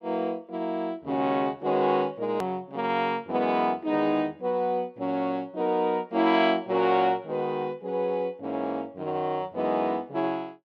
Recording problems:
hard cut with a click; at 2.5 s

